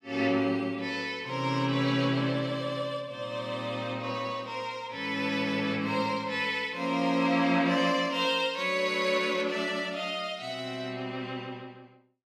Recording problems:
none

